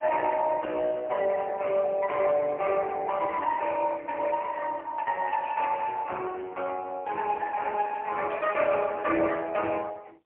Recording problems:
phone line; 340 Hz to 2.3 kHz, AMR-NB, then MP3

